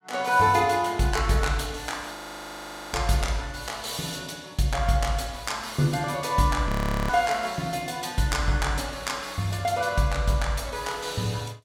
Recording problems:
frozen audio; at 2 s for 1 s and at 6.5 s

